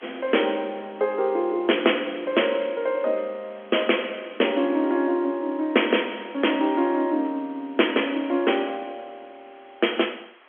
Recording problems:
phone line; 240 Hz to 3.4 kHz, G.711
background hiss; SNR 27 dB

